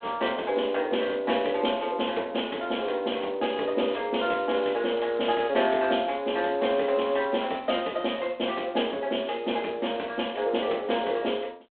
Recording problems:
phone line; 260 Hz to 3.6 kHz, G.726

